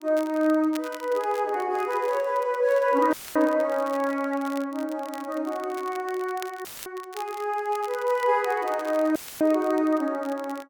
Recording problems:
crackle; vinyl, SNR 21 dB
audio cutting out; at 3 s, at 6.5 s and at 9 s; filled with static

